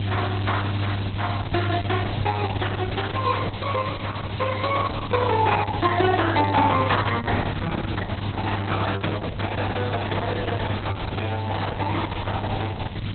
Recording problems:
lossy codec; Opus, log-spectral distance 13 dB, nothing above 4 kHz
mains hum; 50 Hz, harmonics up to 500 Hz, SNR 3 dB
background hiss; SNR 13 dB
wind on the microphone; below 1.1 kHz, SNR 20 dB

